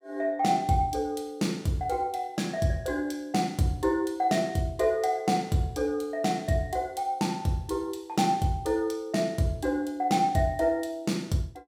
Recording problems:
none

